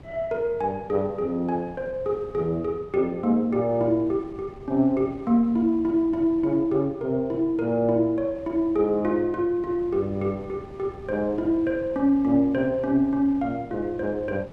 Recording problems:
wind noise; below 400 Hz, SNR 21 dB

